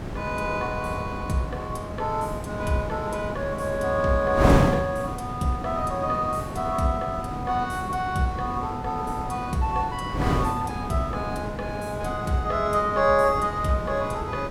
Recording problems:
wind on the microphone; below 540 Hz, SNR 4 dB

